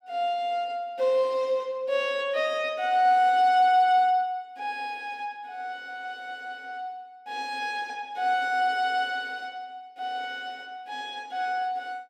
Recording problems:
none

